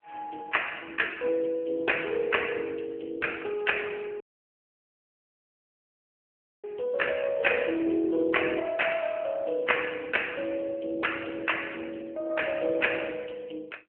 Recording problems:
phone line; 240 Hz to 3.4 kHz, AMR-NB
audio cutting out; at 4 s for 2.5 s

